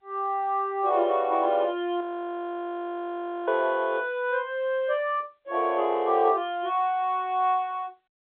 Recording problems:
phone line; 300 Hz to 3.7 kHz, G.711
audio freezing; at 2 s for 1.5 s

